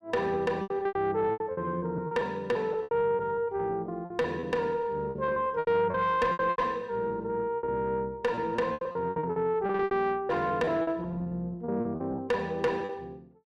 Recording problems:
distortion; soft clipping, signal-to-distortion ratio 12 dB
lost packets; 16% of the sound replaced, filled with repeated pitch periods

